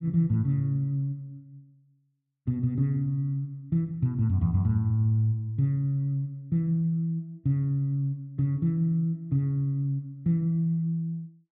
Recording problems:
none

